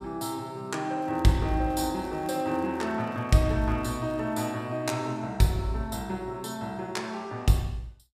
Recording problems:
crackling; from 1 to 4.5 s; loose cable, SNR 30 dB

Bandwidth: 15 kHz